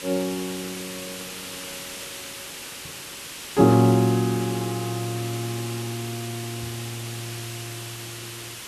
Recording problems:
background hiss; SNR 10 dB

